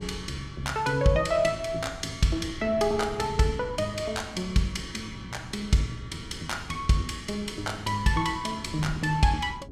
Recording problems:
wind noise; below 210 Hz, SNR 15 dB

